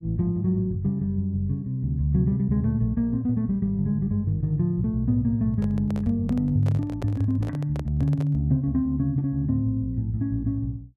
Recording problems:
handling noise; from 5.5 to 8.5 s; peak -8 dB vs average level

